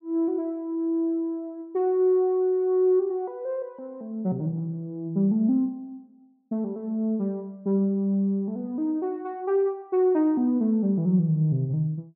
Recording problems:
none

